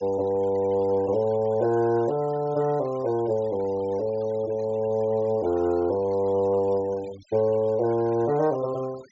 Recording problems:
treble cut off; nothing above 8 kHz
noise reduction artefacts; signal-to-artefact ratio 24 dB

